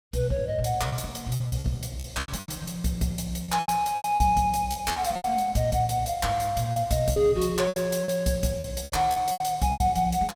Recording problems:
packet loss; 13% of the sound replaced, filled with repeated pitch periods

